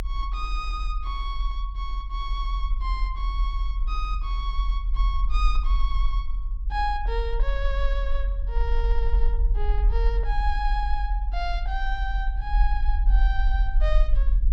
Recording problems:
rumble; below 44 Hz, strongest tone 42 Hz, SNR -6 dB

